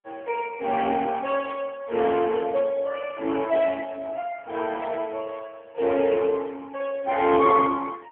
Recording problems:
telephone audio; 280 Hz to 3.3 kHz, AMR-NB

